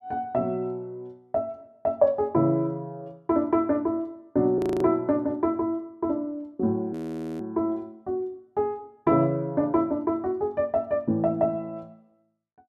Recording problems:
audio freezing; at 4.5 s and at 7 s

